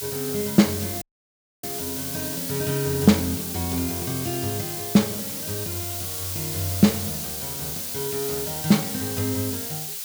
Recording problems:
hiss; slope +4 dB per octave, SNR 3 dB
audio cutting out; at 1 s for 0.5 s

